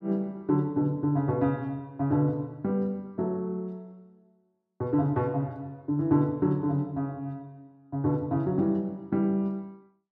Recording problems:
none

